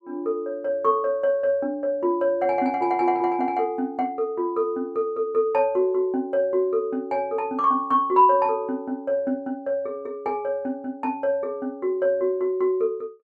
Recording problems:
none

